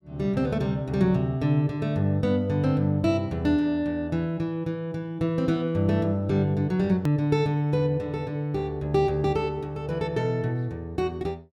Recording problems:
edit click; at 7 s

